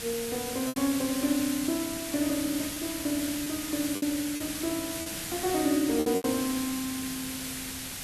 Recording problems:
hiss; SNR 4 dB
crackle; vinyl, SNR 26 dB
lost packets; 5% of the sound replaced, filled with repeated pitch periods

